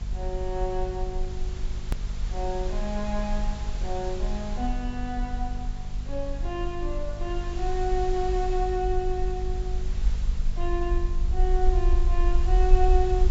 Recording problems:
low-pass filter; nothing above 8 kHz
hum; 50 Hz, harmonics up to 500 Hz, SNR 10 dB
hiss; slope -2 dB per octave, SNR 14 dB
rumble; below 46 Hz, strongest tone 24 Hz, SNR -1 dB
click at an edit; at 2 s

